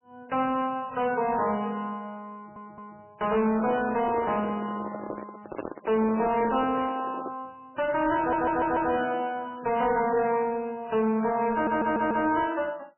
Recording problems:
lossy compression; MP3, log-spectral distance 6 dB, nothing above 3 kHz
distortion; soft clipping, signal-to-distortion ratio 11 dB
stutter; at 2.5 s, at 8 s and at 12 s
microphone handling noise; from 3.5 to 7.5 s; peak -3 dB vs average level

